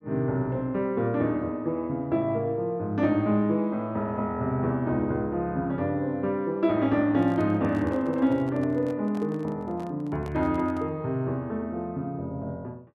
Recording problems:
handling noise; from 7 to 11 s; peak -11 dB vs average level

